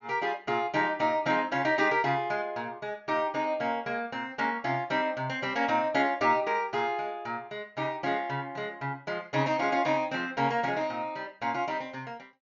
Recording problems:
low-pass filter; nothing above 7 kHz

